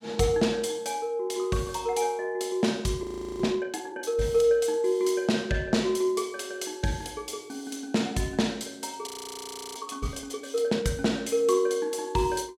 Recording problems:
audio freezing; at 3 s and at 9 s for 0.5 s

